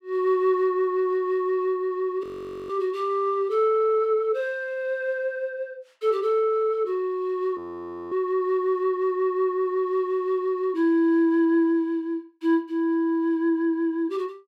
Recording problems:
audio freezing; at 2 s and at 7.5 s for 0.5 s

